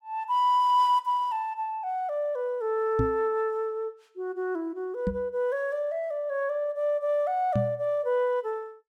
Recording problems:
microphone bump; at 3 s, at 5 s and at 7.5 s; peak +3 dB vs average level

